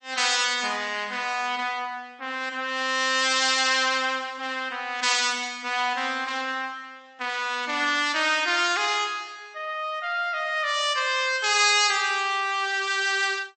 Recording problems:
lossy codec; MP3, log-spectral distance 4 dB, nothing above 8.2 kHz

